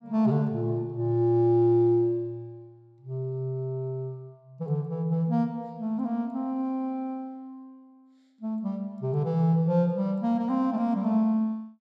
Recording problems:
none

